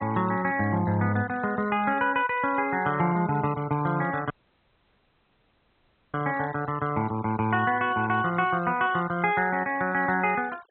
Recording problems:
low-pass filter; nothing above 4 kHz
denoising artefacts; signal-to-artefact ratio 21 dB
dropout; at 4.5 s for 2 s

